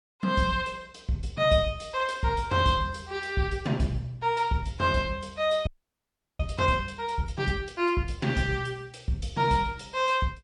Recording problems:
codec artefacts; MP3, log-spectral distance 2 dB
frozen audio; at 5.5 s for 0.5 s

